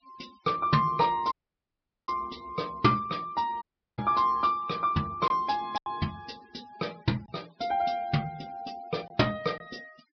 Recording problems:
low-pass filter; nothing above 5.5 kHz
noise reduction artefacts; signal-to-artefact ratio 24 dB
lost packets; 3% of the sound replaced, filled with silence
audio cutting out; at 1.5 s for 0.5 s and at 3.5 s

